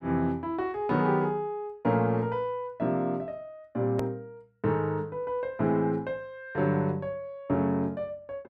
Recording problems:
edit click; at 4 s

